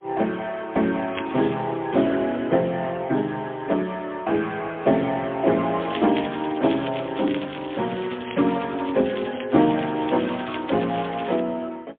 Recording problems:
telephone audio; 150 Hz to 3.4 kHz, AMR-NB, then MP3
crackling; at 1 s and from 6 to 11 s; loose cable, SNR 17 dB

